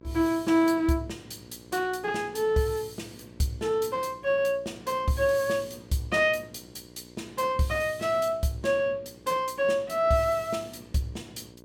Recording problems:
hum; 60 Hz, harmonics up to 1.6 kHz, SNR 24 dB

